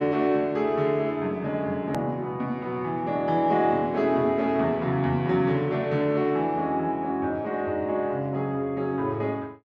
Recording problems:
click at an edit; at 2 s

